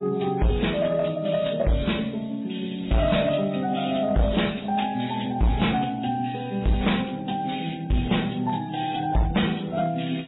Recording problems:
lossy codec; AAC, then MP3, log-spectral distance 10 dB, nothing above 3.8 kHz
distorted audio; hard clipping, uneven, signal-to-distortion ratio 7 dB

